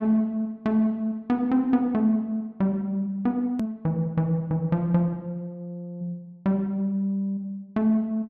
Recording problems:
click at an edit; at 3.5 s

